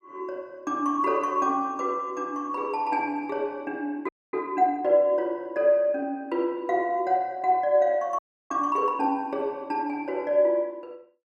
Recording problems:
frozen audio; at 4 s and at 8 s

